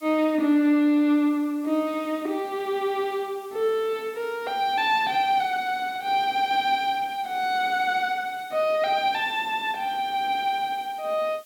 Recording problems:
background hiss; slope +2 dB per octave, SNR 27 dB

